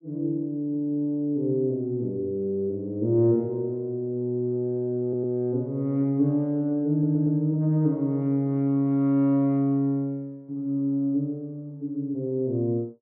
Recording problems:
stutter; at 5 s and at 7 s

